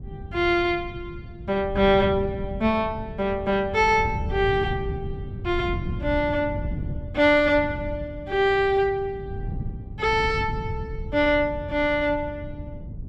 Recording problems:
wind on the microphone; below 150 Hz, SNR 11 dB

